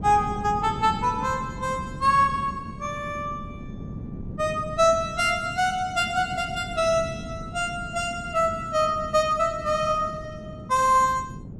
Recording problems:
wind on the microphone; below 230 Hz, SNR 13 dB

